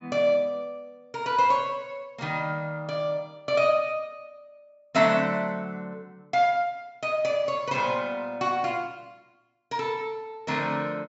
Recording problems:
treble cut off; nothing above 8 kHz

